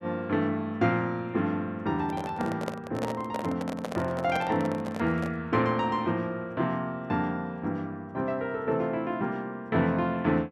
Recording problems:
handling noise; from 2 to 5.5 s; peak 0 dB vs average level

